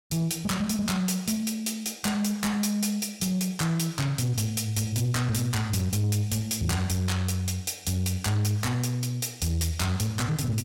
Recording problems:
distortion; soft clipping, signal-to-distortion ratio 12 dB

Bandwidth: 16.5 kHz